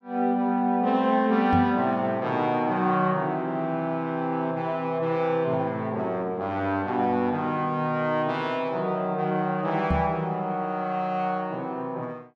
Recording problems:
microphone thump; at 1.5 s and at 10 s; peak +4 dB vs average level

